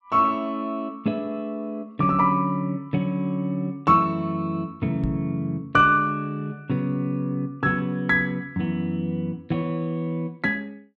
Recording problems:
microphone bump; at 5 s; peak -1 dB vs average level

